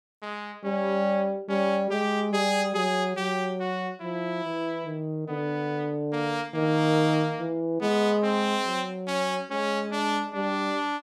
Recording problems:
none

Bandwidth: 15 kHz